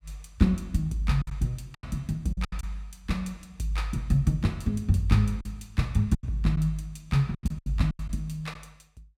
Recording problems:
lost packets; 8% of the sound replaced, filled with silence

